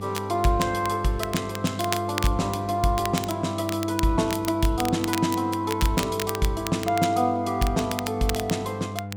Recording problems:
electrical hum; 50 Hz, harmonics up to 1 kHz, SNR 10 dB
crackle; vinyl, SNR 10 dB

